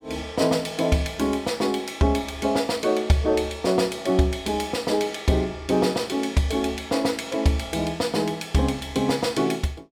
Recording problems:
none

